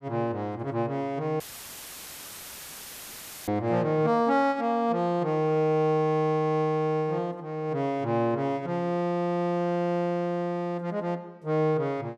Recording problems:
audio cutting out; at 1.5 s for 2 s; filled with static

